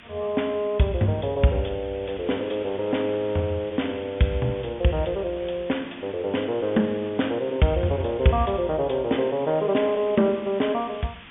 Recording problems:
low-pass filter; nothing above 3.5 kHz
background hiss; SNR 20 dB

